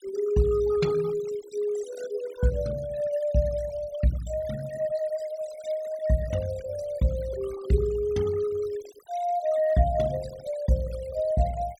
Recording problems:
noise reduction artefacts; signal-to-artefact ratio 16 dB

